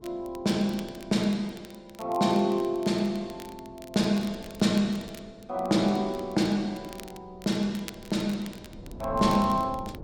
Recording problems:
wind on the microphone; below 300 Hz, SNR 20 dB
crackle; vinyl, SNR 22 dB

